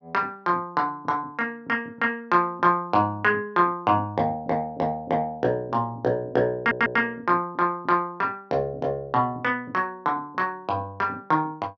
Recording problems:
stutter; at 6.5 s

